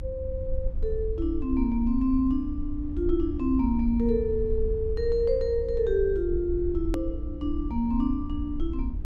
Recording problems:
hum; 60 Hz, harmonics up to 360 Hz, SNR 20 dB
low-frequency rumble; below 68 Hz, SNR 7 dB
click at an edit; at 7 s

